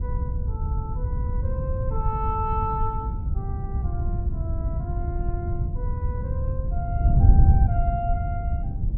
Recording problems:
wind on the microphone; below 100 Hz, SNR -8 dB

